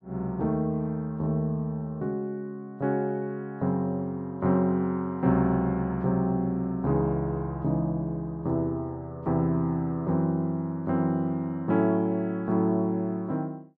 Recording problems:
none

